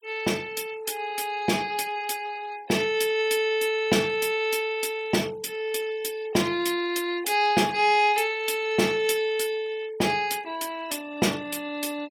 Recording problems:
denoising artefacts; signal-to-artefact ratio 20 dB

